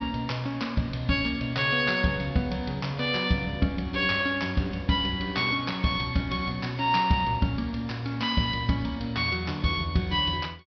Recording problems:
treble missing; nothing above 5.5 kHz

